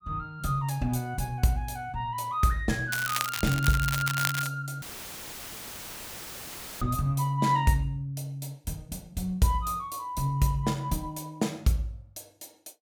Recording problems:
crackle; from 3 to 4.5 s; loose cable, SNR 3 dB
dropout; at 5 s for 2 s; filled with static

